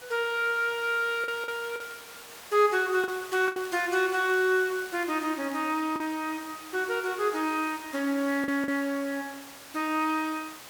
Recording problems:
hiss; slope -1 dB per octave, SNR 16 dB
packet loss; 4% of the sound replaced, filled with the last packet
crackle; from 3 to 6 s; loose cable, SNR 26 dB

